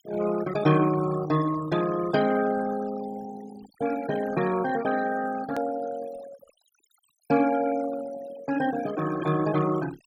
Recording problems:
denoising artefacts; signal-to-artefact ratio 14 dB
hard cut with a click; at 5.5 s

